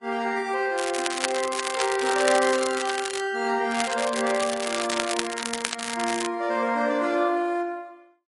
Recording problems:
codec artefacts; Vorbis, then MP3, log-spectral distance 7 dB, nothing above 10.7 kHz
crackling; from 1 to 3 s and from 3.5 to 6.5 s; loose cable, SNR 5 dB

